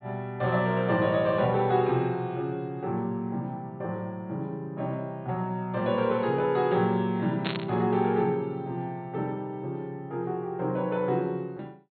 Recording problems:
low-pass filter; nothing above 4.3 kHz
static burst; at 7.5 s; peak 0 dB vs average level

